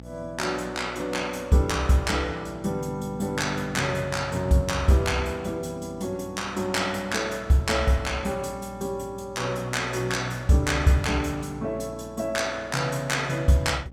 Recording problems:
hum; 60 Hz, harmonics up to 900 Hz, SNR 19 dB

